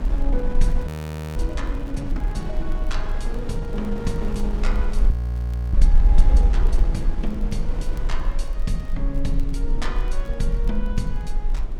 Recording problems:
electrical hum; 60 Hz, harmonics up to 720 Hz, SNR 26 dB
low-frequency rumble; below 44 Hz, strongest tone 20 Hz, SNR -6 dB
wind noise; below 370 Hz, SNR 4 dB
crackle; vinyl, SNR 25 dB
audio freezing; at 1 s and at 5 s for 0.5 s

